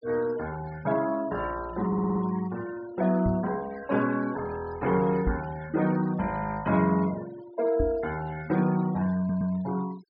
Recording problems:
treble missing; nothing above 5.5 kHz
noise reduction artefacts; signal-to-artefact ratio 18 dB
stutter; at 2 s and at 9 s
microphone thump; at 3.5 s, at 5.5 s and at 8 s; peak +3 dB vs average level

